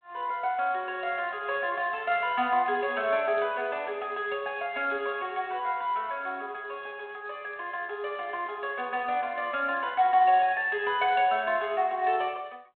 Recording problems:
phone line; 280 Hz to 3.5 kHz, G.726

